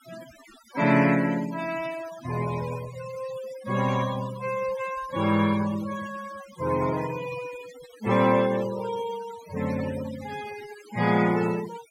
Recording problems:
denoising artefacts; signal-to-artefact ratio 14 dB

